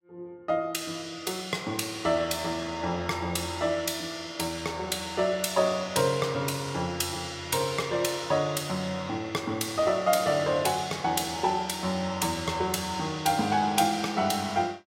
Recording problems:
none

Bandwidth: 16 kHz